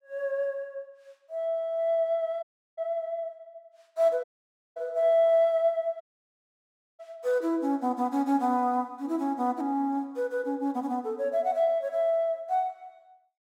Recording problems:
audio cutting out; at 2.5 s, at 4 s for 0.5 s and at 6 s for 1 s

